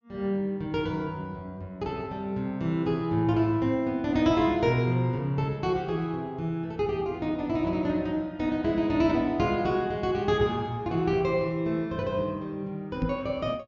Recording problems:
low-pass filter; nothing above 7.1 kHz
microphone bump; at 13 s; peak +3 dB vs average level

